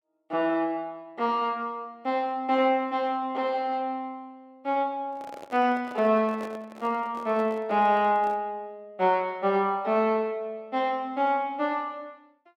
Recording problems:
microphone handling noise; from 5 to 8.5 s; peak -9 dB vs average level

